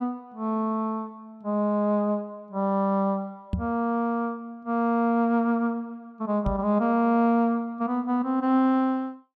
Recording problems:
microphone thump; at 3.5 s and at 6.5 s; peak +2 dB vs average level

